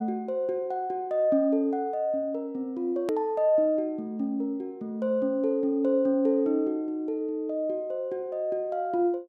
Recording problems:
hard cut with a click; at 3 s

